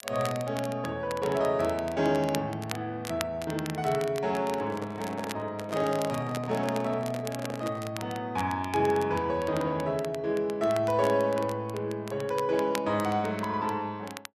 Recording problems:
crackle; vinyl, SNR 14 dB
handling noise; from 4.5 to 8 s; peak -5 dB vs average level

